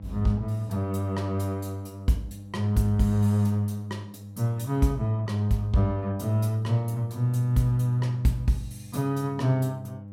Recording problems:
hum; 50 Hz, harmonics up to 600 Hz, SNR 18 dB

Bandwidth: 16 kHz